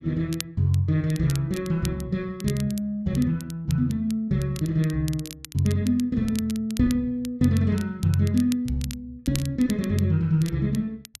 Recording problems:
crackle; vinyl, SNR 17 dB

